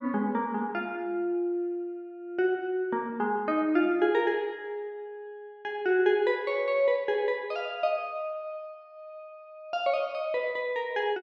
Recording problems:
none

